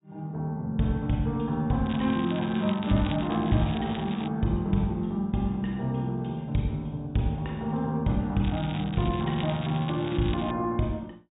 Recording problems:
low-pass filter; nothing above 4 kHz
crackling; from 2 to 4.5 s and from 8.5 to 11 s; loose cable, SNR 15 dB

